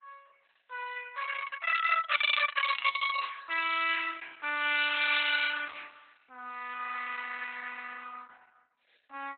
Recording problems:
lossy compression; Opus, log-spectral distance 5 dB, nothing above 3.9 kHz

